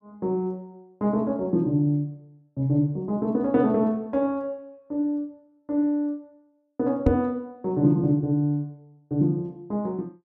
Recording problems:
microphone thump; at 7 s; peak +5 dB vs average level

